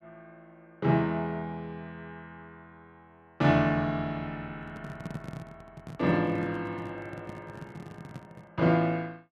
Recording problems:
microphone handling noise; from 4.5 to 8.5 s; peak -5 dB vs average level

